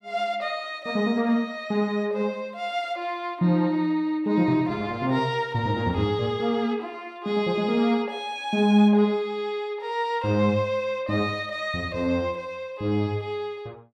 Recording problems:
none

